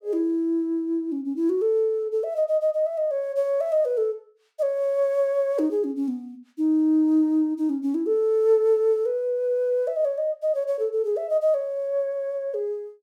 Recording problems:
none

